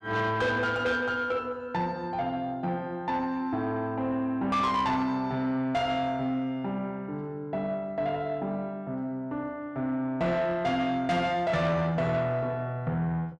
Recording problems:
distortion; soft clipping, signal-to-distortion ratio 12 dB

